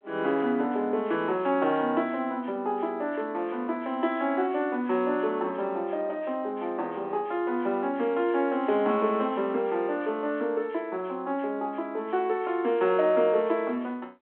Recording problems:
telephone audio; 240 Hz to 3.4 kHz, G.726

